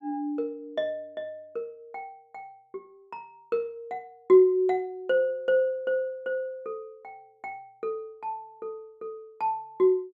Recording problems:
none

